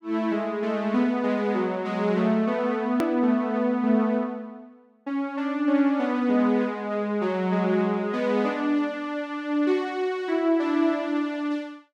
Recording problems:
hard cut with a click; at 3 s

